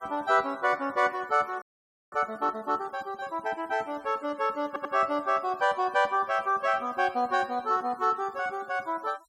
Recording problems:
denoising artefacts; signal-to-artefact ratio 27 dB
frozen audio; at 1.5 s for 0.5 s
audio stuttering; at 4.5 s

